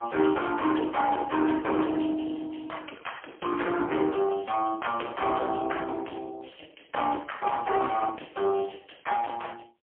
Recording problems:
phone line; 260 Hz to 3.3 kHz, AMR-NB, then MP3
distorted audio; hard clipping, signal-to-distortion ratio 13 dB

